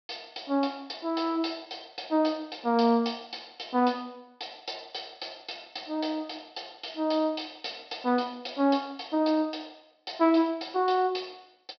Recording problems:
low-pass filter; nothing above 5.5 kHz

